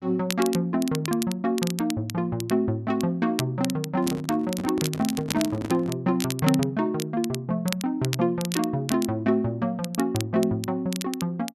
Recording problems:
crackle; vinyl, SNR 10 dB
handling noise; from 4 to 6 s; peak -2 dB vs average level

